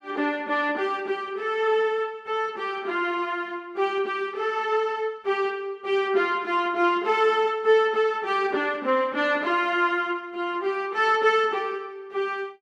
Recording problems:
none

